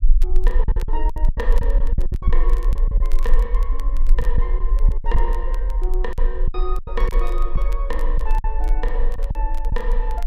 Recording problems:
rumble; below 40 Hz, strongest tone 22 Hz, SNR -9 dB
crackle; vinyl, SNR 18 dB
packet loss; 10% of the sound replaced, filled with silence

